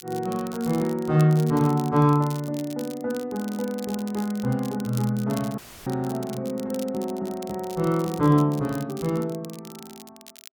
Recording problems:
crackling; vinyl, SNR 19 dB
audio cutting out; at 5.5 s; filled with static

